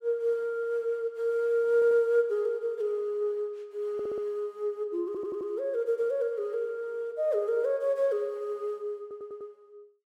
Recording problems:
stutter; 4 times, first at 1.5 s

